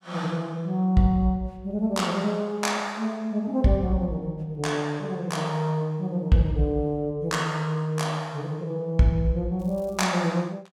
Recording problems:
crackle; at 9.5 s; loose cable, SNR 30 dB

